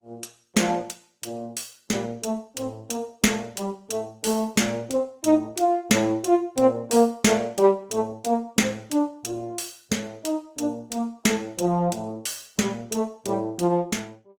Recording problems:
lossy codec; Opus, log-spectral distance 4 dB, nothing above 19 kHz

